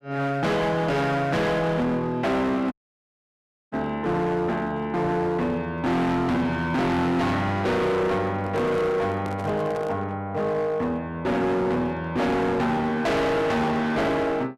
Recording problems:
distortion; hard clipping, signal-to-distortion ratio 6 dB
audio cutting out; at 2.5 s for 1 s
handling noise; from 8.5 to 10 s; peak -8 dB vs average level

